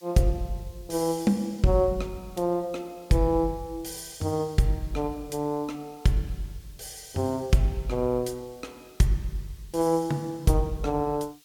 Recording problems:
background hiss; slope +5 dB per octave, SNR 27 dB

